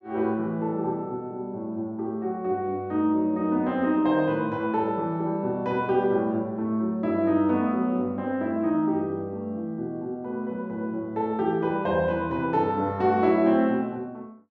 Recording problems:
none

